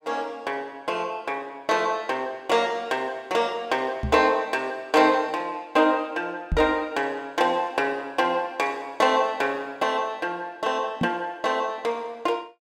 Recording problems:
microphone thump; at 4 s, at 6.5 s and at 11 s; peak +2 dB vs average level

